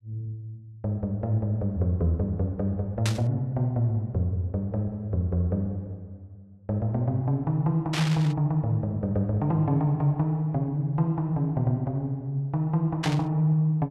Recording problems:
burst of static; at 3 s, at 8 s and at 13 s; peak 0 dB vs average level

